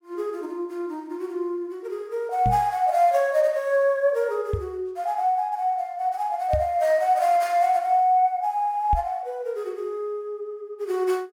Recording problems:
microphone bump; 4 times, first at 2.5 s; peak +1 dB vs average level

